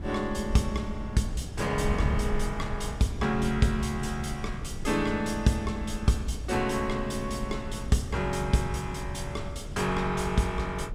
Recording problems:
wind noise; below 130 Hz, SNR 8 dB

